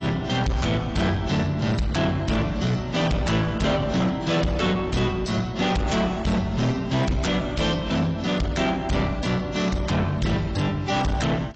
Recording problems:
lossy codec; AAC, log-spectral distance 4 dB, nothing above 7.6 kHz
distorted audio; soft clipping, signal-to-distortion ratio 6 dB

